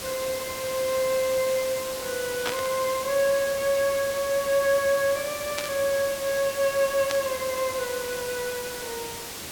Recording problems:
background hiss; slope -2 dB per octave, SNR 8 dB
static burst; at 2.5 s, at 5.5 s and at 7 s; peak +1 dB vs average level

